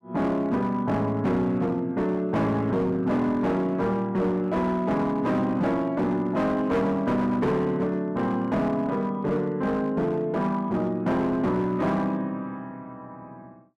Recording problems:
distorted audio; hard clipping, signal-to-distortion ratio 11 dB

